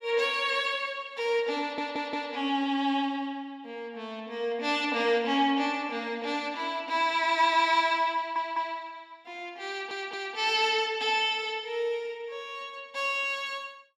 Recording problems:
stutter; at 1.5 s, at 8 s and at 9.5 s

